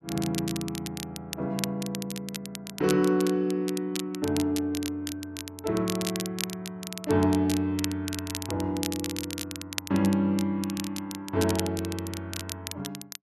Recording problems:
crackle; vinyl, SNR 8 dB

